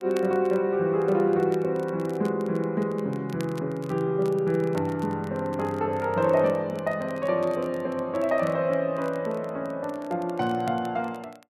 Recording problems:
crackle; vinyl, SNR 26 dB

